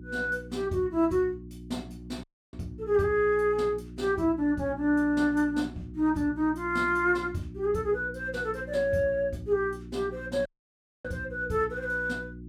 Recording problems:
electrical hum; 60 Hz, harmonics up to 360 Hz, SNR 15 dB
audio cutting out; at 2 s and at 10 s for 0.5 s

